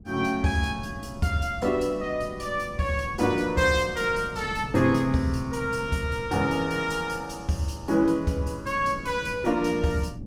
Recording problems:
wind noise; below 220 Hz, SNR 15 dB

